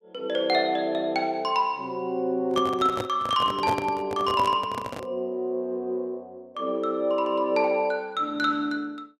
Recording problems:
microphone handling noise; from 2.5 to 5 s; peak 0 dB vs average level

